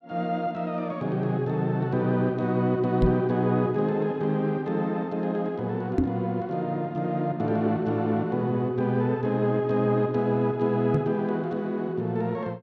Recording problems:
microphone thump; at 3 s, at 6 s and at 11 s; peak +5 dB vs average level

